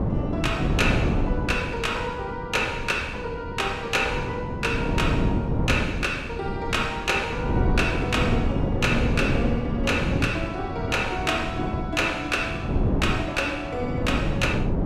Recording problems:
wind noise; below 290 Hz, SNR 1 dB

